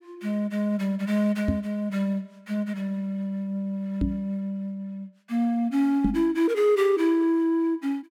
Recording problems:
microphone bump; at 1.5 s, at 4 s and at 6 s; peak +5 dB vs average level

